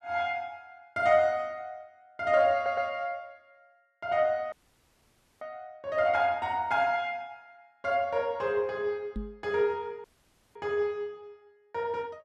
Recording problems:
audio stuttering; at 2.5 s
audio cutting out; at 4.5 s for 1 s and at 10 s for 0.5 s
knock on the microphone; at 9 s; peak -3 dB vs average level

